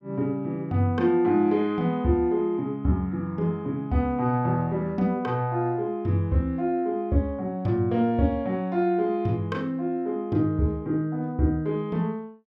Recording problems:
none

